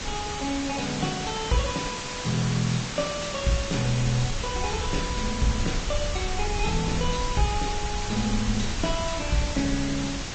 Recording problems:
treble cut off; nothing above 7.3 kHz
lossy compression; Vorbis, log-spectral distance 11 dB
hiss; slope -2 dB per octave, SNR 4 dB
rumble; below 72 Hz, SNR 7 dB

